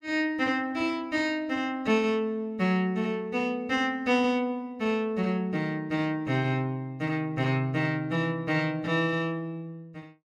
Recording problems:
none

